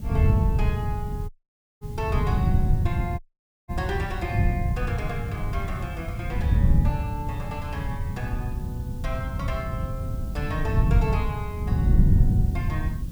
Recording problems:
hiss; slope +1 dB per octave, SNR 18 dB
wind noise; below 130 Hz, SNR -8 dB
dropout; at 1.5 s for 0.5 s and at 3 s

